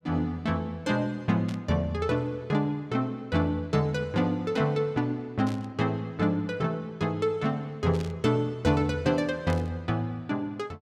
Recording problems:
burst of static; 4 times, first at 1.5 s; peak -11 dB vs average level

